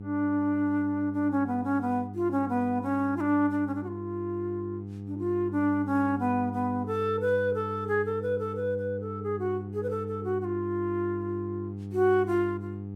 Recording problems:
hum; 50 Hz, harmonics up to 500 Hz, SNR 9 dB

